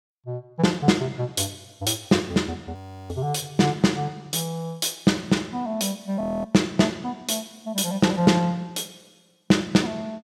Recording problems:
audio freezing; at 3 s and at 6 s

